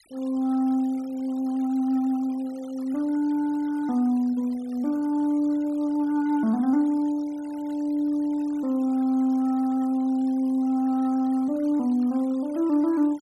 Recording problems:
noise reduction artefacts; signal-to-artefact ratio 26 dB

